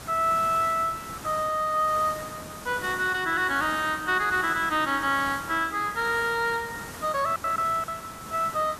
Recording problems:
background hiss; SNR 14 dB
lost packets; 3% of the sound replaced, filled with silence

